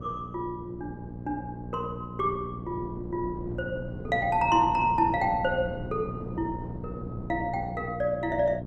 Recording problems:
electrical hum; 60 Hz, harmonics up to 600 Hz, SNR 10 dB
wind noise; below 330 Hz, SNR 13 dB

